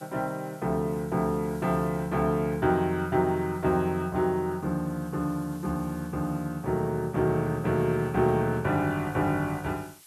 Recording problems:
background hiss; slope +2 dB per octave, SNR 25 dB

